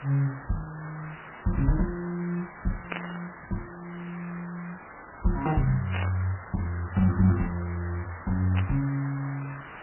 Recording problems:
codec artefacts; MP3, log-spectral distance 9 dB, nothing above 2.7 kHz
background hiss; SNR 13 dB
burst of static; at 3 s, at 6 s and at 8.5 s; peak +1 dB vs average level

